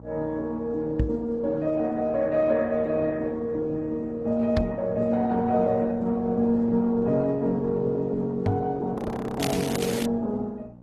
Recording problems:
lossy compression; Opus, then Opus, log-spectral distance 2 dB, nothing above 13.1 kHz
hum; 60 Hz, harmonics up to 900 Hz, SNR 21 dB
knock on the microphone; at 1 s, at 4.5 s and at 8.5 s; peak +5 dB vs average level
frozen audio; at 9 s
crackling; at 9.5 s; loose cable, SNR 11 dB

